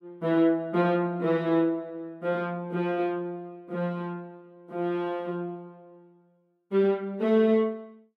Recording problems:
none

